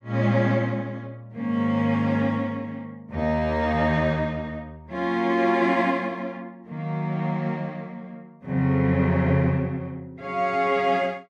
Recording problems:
none

